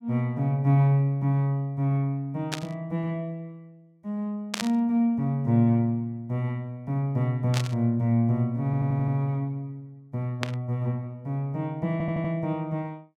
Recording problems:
burst of static; 4 times, first at 2.5 s; peak +1 dB vs average level
audio stuttering; at 8.5 s and at 12 s

